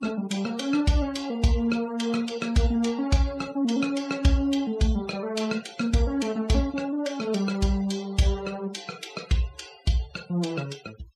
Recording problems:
noise reduction artefacts; signal-to-artefact ratio 20 dB

